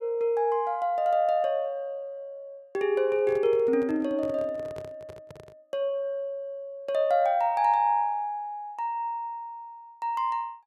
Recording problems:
handling noise; from 3 to 5.5 s; peak -11 dB vs average level

